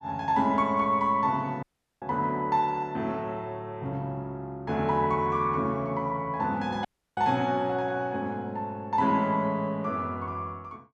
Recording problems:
dropout; at 1.5 s and at 7 s

